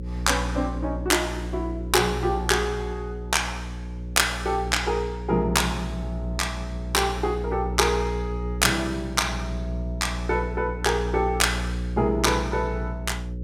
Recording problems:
electrical hum; 60 Hz, harmonics up to 540 Hz, SNR 6 dB

